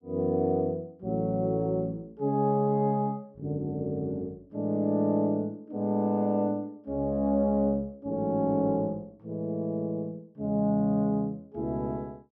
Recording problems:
none

